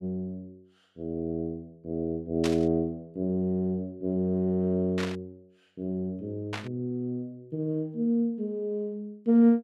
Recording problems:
burst of static; at 2.5 s, at 5 s and at 6.5 s; peak -1 dB vs average level

